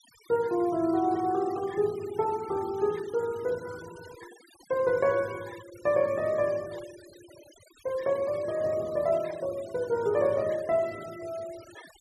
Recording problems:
noise reduction artefacts; signal-to-artefact ratio 21 dB

